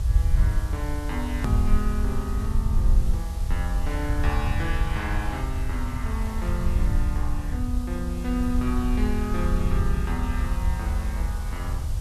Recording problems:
hiss; SNR 13 dB
low-frequency rumble; below 76 Hz, SNR -4 dB
edit click; at 1.5 s

